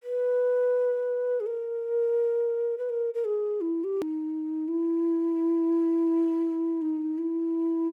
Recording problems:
click at an edit; at 4 s

